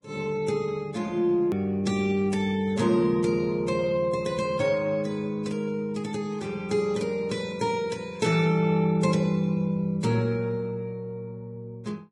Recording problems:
codec artefacts; Vorbis, log-spectral distance 2 dB
hard cut with a click; at 1.5 s

